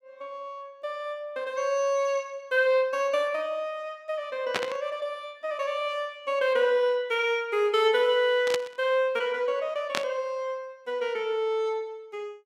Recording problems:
static burst; at 4.5 s, at 8.5 s and at 10 s; peak +3 dB vs average level

